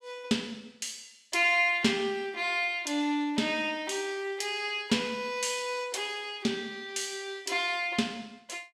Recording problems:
none

